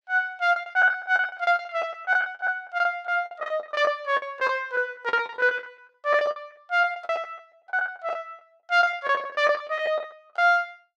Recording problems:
lost packets; 18% of the sound replaced, filled with the last packet

